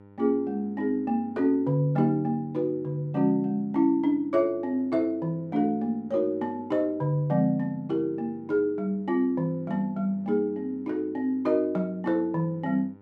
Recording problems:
hum; 50 Hz, harmonics up to 1.4 kHz, SNR 26 dB

